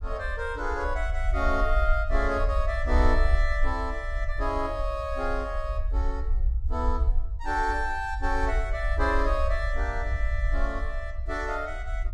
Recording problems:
rumble; below 60 Hz, SNR 1 dB

